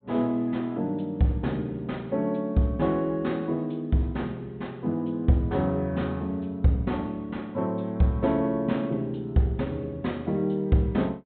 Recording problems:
low-pass filter; nothing above 4 kHz

